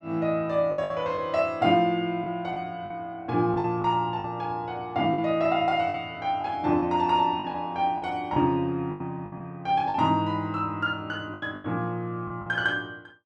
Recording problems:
lost packets; 8% of the sound replaced, filled with the last packet

